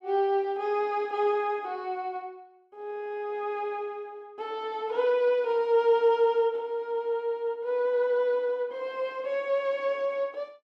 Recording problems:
none

